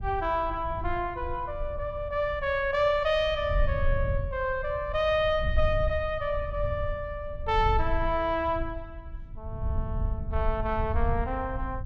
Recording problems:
rumble; below 80 Hz, SNR 6 dB

